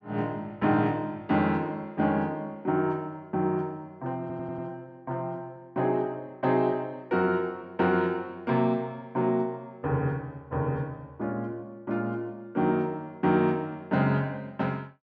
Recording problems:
audio stuttering; at 4 s

